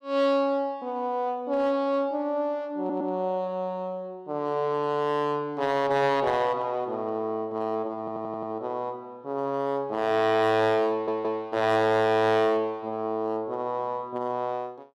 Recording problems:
distortion; hard clipping, uneven, signal-to-distortion ratio 11 dB
stutter; at 3 s, at 8 s and at 11 s

